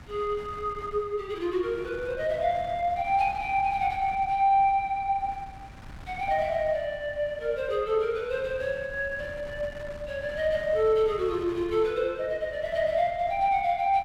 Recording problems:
wind noise; below 670 Hz, SNR 19 dB

